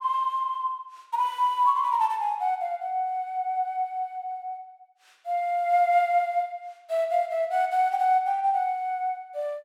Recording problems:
none

